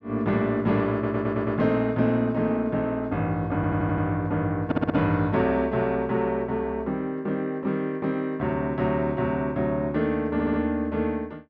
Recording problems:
audio stuttering; 4 times, first at 1 s

